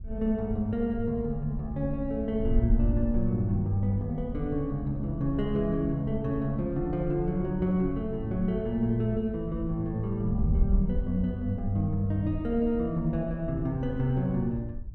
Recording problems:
wind noise; below 68 Hz, SNR 7 dB

